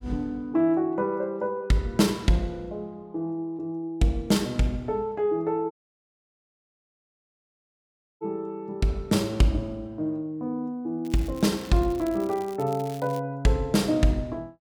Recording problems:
dropout; at 5.5 s for 2.5 s
crackling; from 11 to 13 s; loose cable, SNR 22 dB

